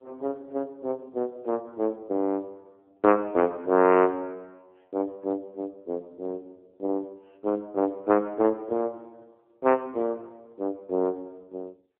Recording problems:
phone line; 220 Hz to 2.9 kHz, AMR-NB

